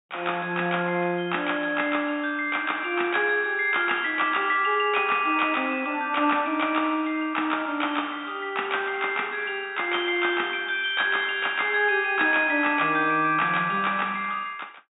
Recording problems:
low-pass filter; nothing above 4 kHz

